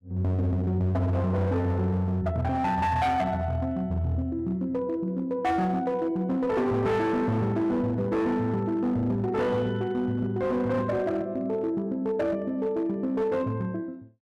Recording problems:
distorted audio; hard clipping, signal-to-distortion ratio 11 dB

